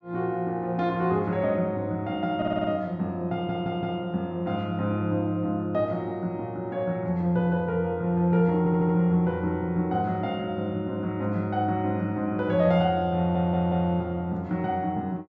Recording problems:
low-pass filter; nothing above 8 kHz
audio stuttering; 4 times, first at 2.5 s

